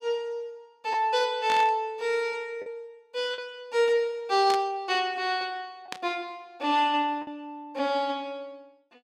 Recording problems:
packet loss; 2% of the sound replaced, filled with the last packet
burst of static; at 1.5 s, at 4.5 s and at 6 s; peak -3 dB vs average level

